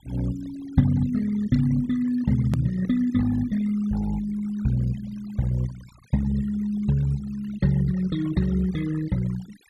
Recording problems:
denoising artefacts; signal-to-artefact ratio 20 dB
click at an edit; at 2.5 s

